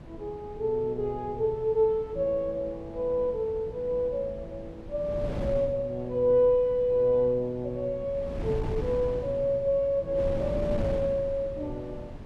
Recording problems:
wind noise; below 270 Hz, SNR 12 dB

